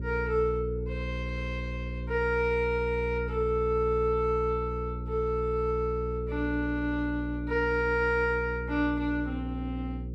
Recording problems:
hum; 60 Hz, harmonics up to 540 Hz, SNR 6 dB

